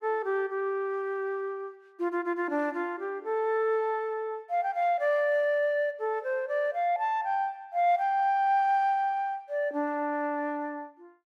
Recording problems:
none

